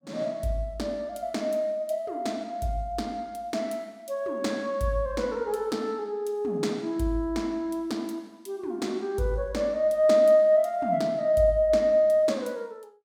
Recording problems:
none

